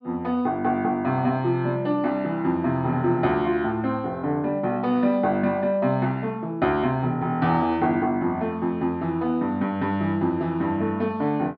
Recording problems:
low-pass filter; nothing above 5.5 kHz

